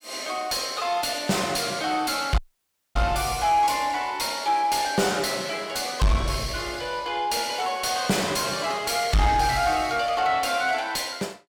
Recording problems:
distortion; soft clipping, signal-to-distortion ratio 10 dB
audio cutting out; at 2.5 s for 0.5 s

